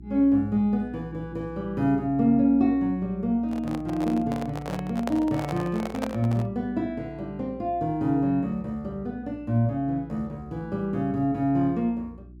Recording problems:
hum; 60 Hz, harmonics up to 360 Hz, SNR 20 dB
microphone handling noise; from 3.5 to 6.5 s; peak -1 dB vs average level

